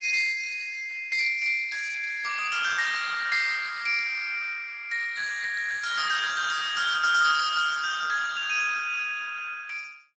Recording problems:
lossy compression; Speex, log-spectral distance 6 dB, nothing above 7.6 kHz

